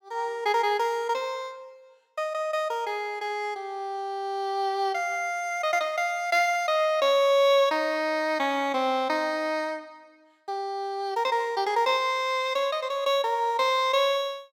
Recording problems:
none

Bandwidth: 17 kHz